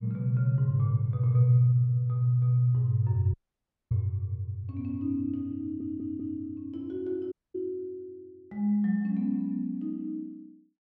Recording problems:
audio cutting out; at 3.5 s for 0.5 s and at 7.5 s
stutter; at 5.5 s

